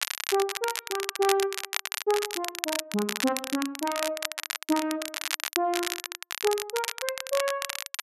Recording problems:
crackle; vinyl, SNR 2 dB

